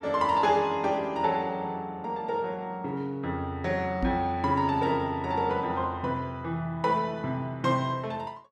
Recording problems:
microphone bump; at 4 s; peak +2 dB vs average level

